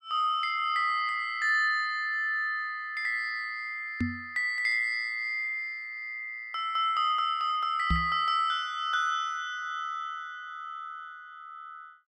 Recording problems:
knock on the microphone; at 4 s and at 8 s; peak +3 dB vs average level

